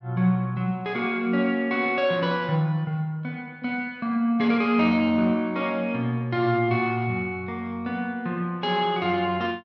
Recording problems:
none

